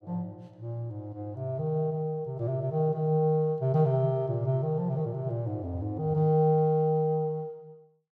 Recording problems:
none

